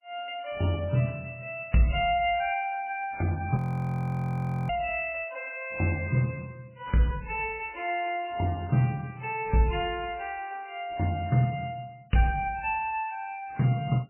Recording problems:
lossy codec; MP3, log-spectral distance 4 dB, nothing above 2.7 kHz
frozen audio; at 3.5 s for 1 s

